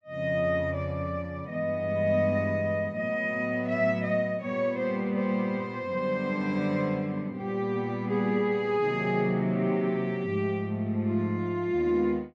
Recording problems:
none

